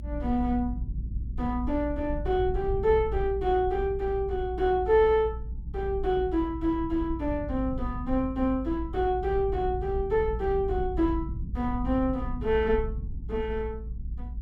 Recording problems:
rumble; below 74 Hz, strongest tone 56 Hz, SNR 8 dB

